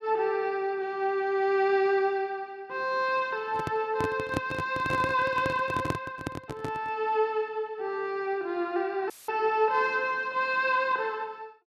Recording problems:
microphone handling noise; from 3.5 to 7 s; peak +2 dB vs average level
audio cutting out; at 9 s; filled with static

